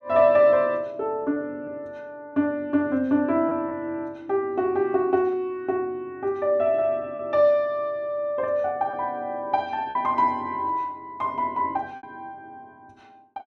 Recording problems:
lost packets; 3% of the sound replaced, filled with repeated pitch periods

